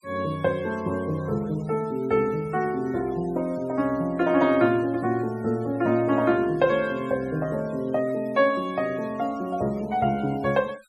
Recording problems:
denoising artefacts; signal-to-artefact ratio 25 dB

